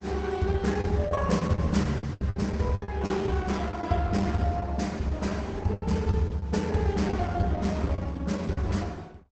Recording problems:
lossy compression; Opus, log-spectral distance 3 dB, nothing above 8 kHz
packet loss; 11% of the sound replaced, filled with the last packet

